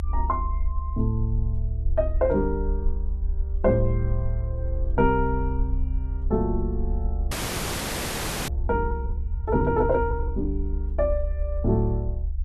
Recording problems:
rumble; below 68 Hz, SNR 2 dB
frozen audio; at 7.5 s for 1 s

